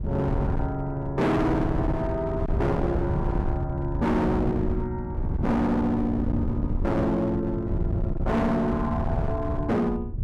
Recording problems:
distorted audio; hard clipping, uneven, signal-to-distortion ratio 7 dB
wind on the microphone; below 170 Hz, SNR 3 dB

